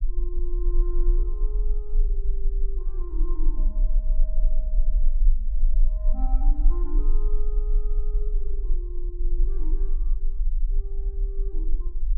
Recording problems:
rumble; below 34 Hz, strongest tone 22 Hz, SNR -16 dB

